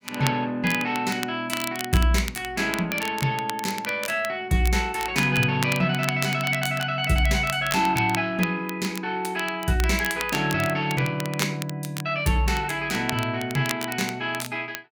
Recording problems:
crackle; vinyl, SNR 11 dB

